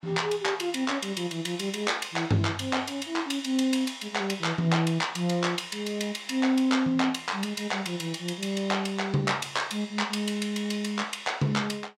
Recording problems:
none

